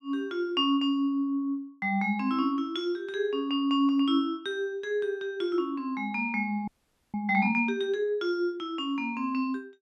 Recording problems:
frozen audio; at 6.5 s

